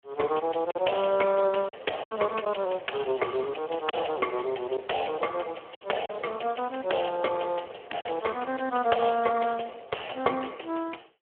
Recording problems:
phone line; 280 Hz to 2.2 kHz, Speex
lost packets; 3% of the sound replaced, filled with silence

